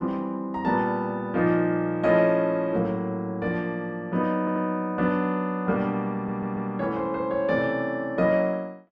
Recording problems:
stutter; at 4.5 s and at 6 s

